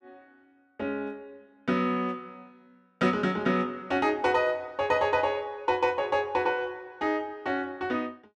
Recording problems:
none

